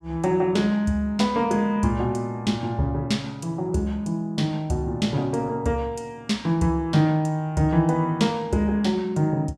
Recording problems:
none

